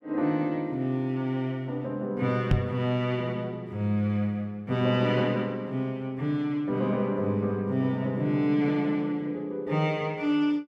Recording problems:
microphone bump; at 2.5 s; peak +8 dB vs average level

